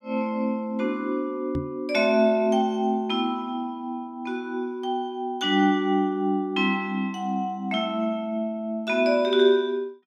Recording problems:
microphone thump; at 1.5 s; peak -1 dB vs average level

